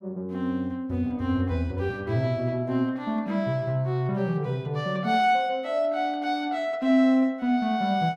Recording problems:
none

